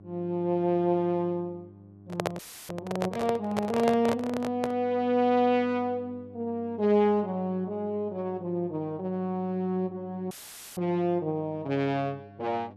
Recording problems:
mains hum; 50 Hz, harmonics up to 800 Hz, SNR 22 dB
microphone handling noise; from 2 to 5 s; peak +3 dB vs average level
audio cutting out; at 2.5 s and at 10 s; filled with static

